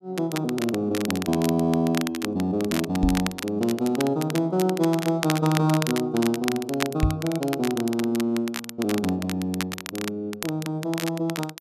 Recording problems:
crackle; vinyl, SNR 9 dB
knock on the microphone; at 3 s and at 7 s; peak +7 dB vs average level

